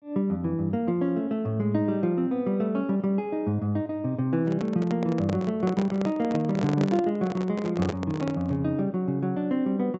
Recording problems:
treble missing; nothing above 7.8 kHz
handling noise; from 4.5 to 8.5 s; peak -1 dB vs average level

